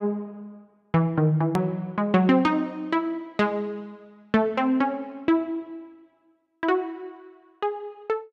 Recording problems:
edit click; at 1.5 s

